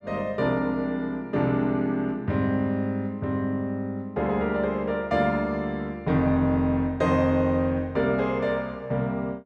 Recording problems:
none

